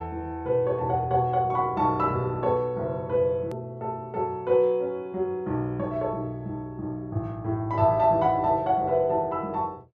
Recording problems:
click at an edit; at 3.5 s

